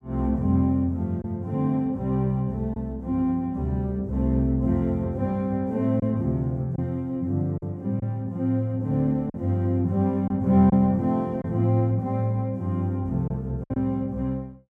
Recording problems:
lost packets; 2% of the sound replaced, filled with silence

